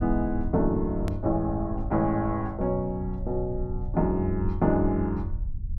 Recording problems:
low-frequency rumble; below 82 Hz, SNR 8 dB
edit click; at 1 s

